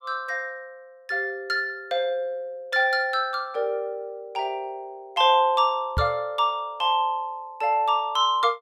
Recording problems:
knock on the microphone; at 6 s; peak +2 dB vs average level

